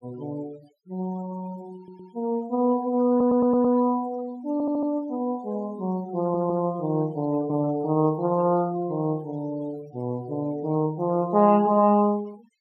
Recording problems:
noise reduction artefacts; signal-to-artefact ratio 24 dB
stutter; 4 times, first at 2 s

